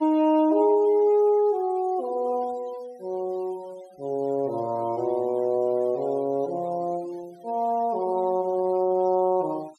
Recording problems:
denoising artefacts; signal-to-artefact ratio 28 dB

